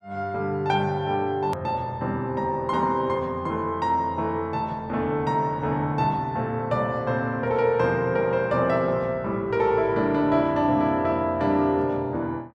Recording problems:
click at an edit; at 1.5 s

